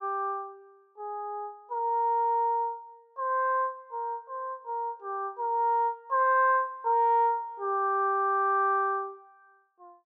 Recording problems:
none

